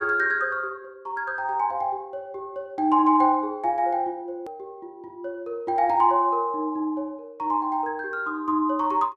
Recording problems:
edit click; at 4.5 s

